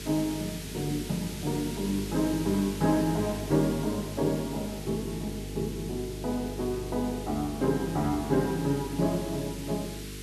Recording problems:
hum; 50 Hz, harmonics up to 450 Hz, SNR 10 dB
hiss; SNR 12 dB

